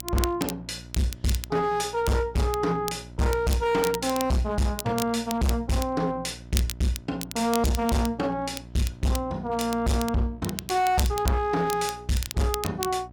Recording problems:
distortion; hard clipping, signal-to-distortion ratio 7 dB
hum; 60 Hz, harmonics up to 720 Hz, SNR 19 dB
crackling; vinyl, SNR 11 dB

